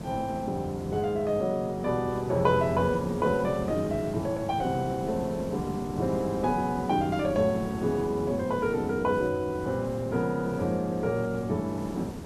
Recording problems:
hiss; SNR 10 dB

